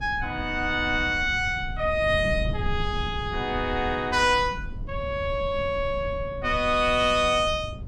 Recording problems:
wind noise; below 130 Hz, SNR 11 dB

